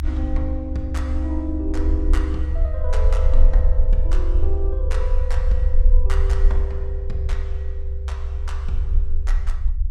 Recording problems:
rumble; below 68 Hz, strongest tone 22 Hz, SNR -9 dB

